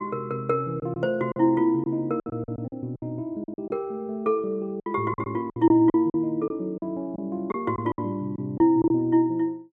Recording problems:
lost packets; 10% of the sound replaced, filled with silence

